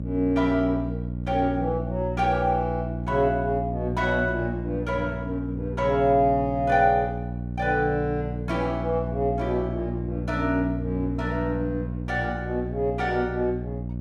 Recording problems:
hum; 60 Hz, harmonics up to 600 Hz, SNR 6 dB

